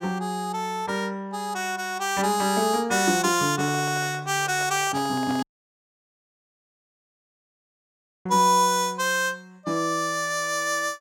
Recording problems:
handling noise; from 3.5 to 5.5 s; peak -9 dB vs average level
dropout; at 5.5 s for 3 s

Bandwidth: 16.5 kHz